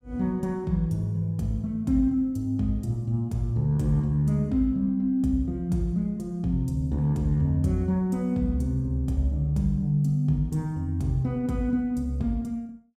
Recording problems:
none

